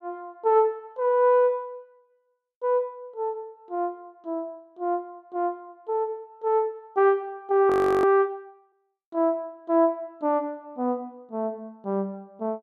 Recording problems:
frozen audio; at 7.5 s

